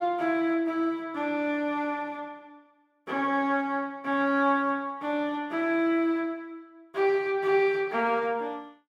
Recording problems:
none

